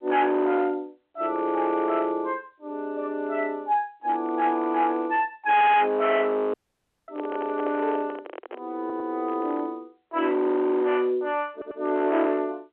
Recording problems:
phone line; 840 Hz to 3.5 kHz, G.711
distortion; hard clipping, signal-to-distortion ratio 9 dB
stutter; at 5.5 s, at 9 s and at 12 s
dropout; at 6.5 s for 0.5 s
microphone handling noise; from 7 to 8.5 s; peak -6 dB vs average level

